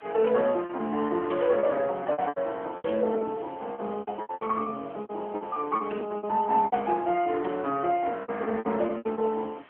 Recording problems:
phone line; 190 Hz to 3.2 kHz, AMR-NB
background hiss; SNR 25 dB
packet loss; 15% of the sound replaced, filled with repeated pitch periods

